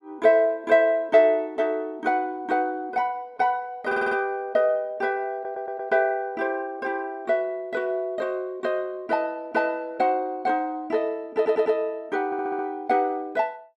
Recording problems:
audio stuttering; 4 times, first at 4 s

